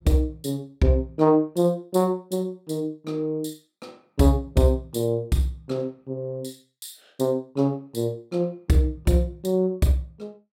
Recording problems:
none

